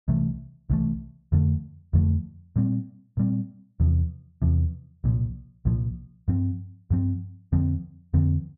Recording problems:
none

